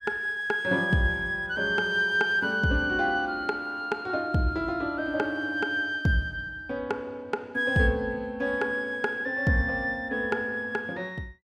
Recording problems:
none

